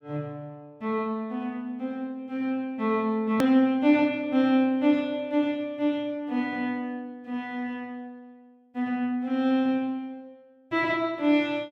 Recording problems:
edit click; at 3.5 s

